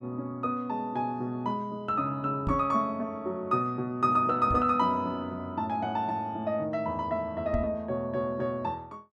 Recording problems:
microphone bump; at 2.5 s, at 4.5 s and at 7.5 s; peak +2 dB vs average level

